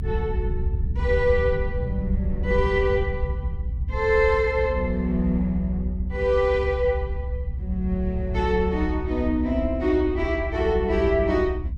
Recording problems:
rumble; below 72 Hz, SNR 5 dB

